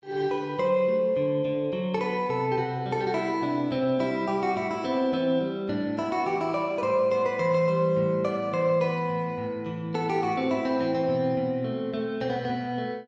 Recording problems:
none

